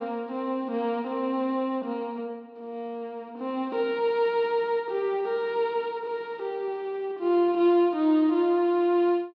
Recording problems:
none

